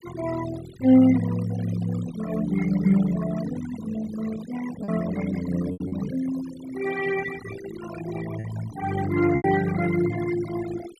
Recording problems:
denoising artefacts; signal-to-artefact ratio 13 dB
lost packets; 3% of the sound replaced, filled with repeated pitch periods

